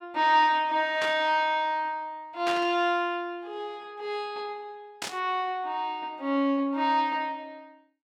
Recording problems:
static burst; at 1 s, at 2.5 s and at 5 s; peak -3 dB vs average level

